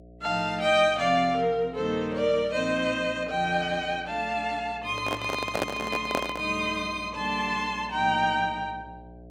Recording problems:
electrical hum; 60 Hz, harmonics up to 720 Hz, SNR 22 dB
microphone handling noise; from 5 to 6.5 s; peak +3 dB vs average level

